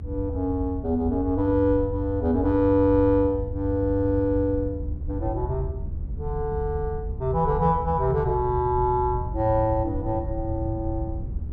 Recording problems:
rumble; below 78 Hz, SNR 8 dB

